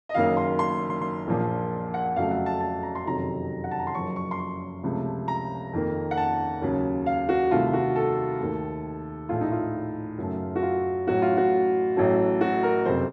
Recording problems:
stutter; at 1 s

